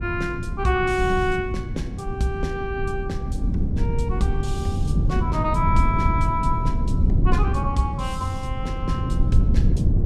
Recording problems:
rumble; below 130 Hz, SNR -1 dB

